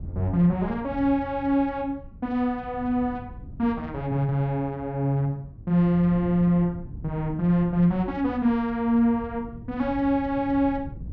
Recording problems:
wind noise; below 140 Hz, SNR 16 dB

